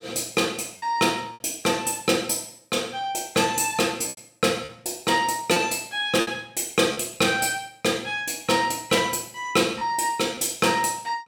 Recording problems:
packet loss; 4% of the sound replaced, filled with repeated pitch periods

